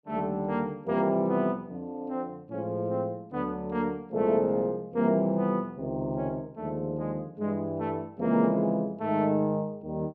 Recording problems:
none

